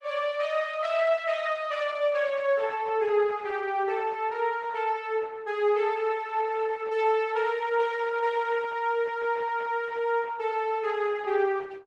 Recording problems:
lossy codec; Opus, log-spectral distance 3 dB

